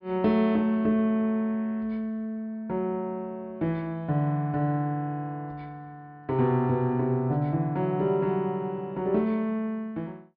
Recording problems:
low-pass filter; nothing above 5.5 kHz

